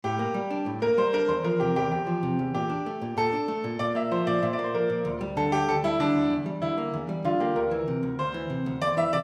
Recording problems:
none

